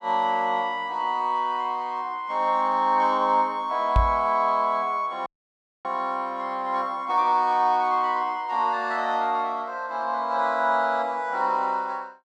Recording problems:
microphone thump; at 4 s; peak +5 dB vs average level
audio cutting out; at 5.5 s for 0.5 s

